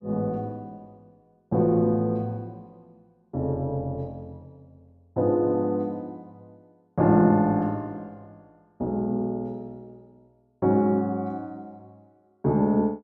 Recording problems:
none

